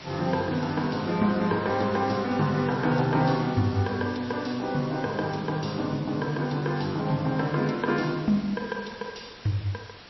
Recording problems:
lossy compression; MP3, log-spectral distance 11 dB, nothing above 5.7 kHz
background hiss; slope -2 dB per octave, SNR 17 dB

